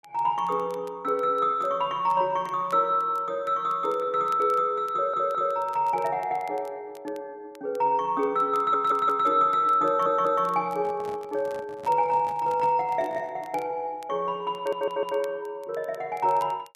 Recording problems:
crackling; vinyl, SNR 30 dB
audio stuttering; 4 times, first at 5 s
microphone handling noise; from 11 to 13 s; peak -13 dB vs average level

